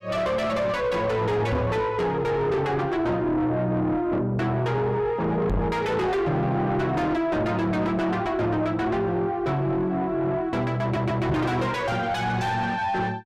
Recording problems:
distorted audio; soft clipping, signal-to-distortion ratio 6 dB
knock on the microphone; at 1.5 s, at 5.5 s and at 11 s; peak +5 dB vs average level
stutter; at 11 s

